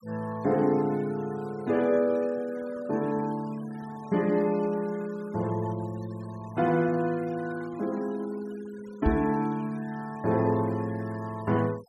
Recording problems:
denoising artefacts; signal-to-artefact ratio 22 dB
microphone thump; at 9 s; peak +5 dB vs average level

